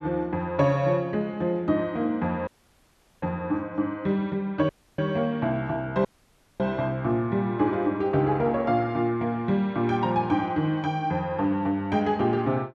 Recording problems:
dropout; at 2.5 s for 1 s, at 4.5 s and at 6 s for 0.5 s

